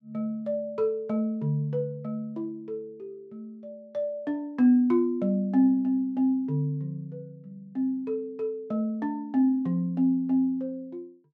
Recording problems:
none

